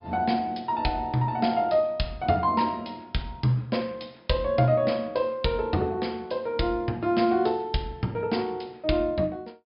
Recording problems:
treble missing; nothing above 5.5 kHz

